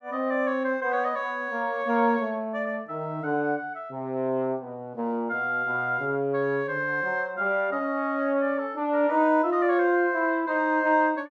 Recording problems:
none

